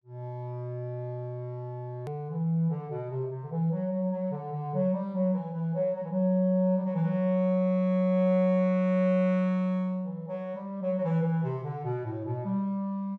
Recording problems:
edit click; at 2 s

